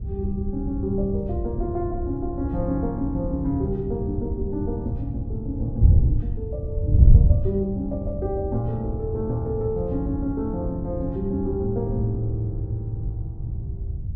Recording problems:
wind on the microphone; below 110 Hz, SNR -2 dB

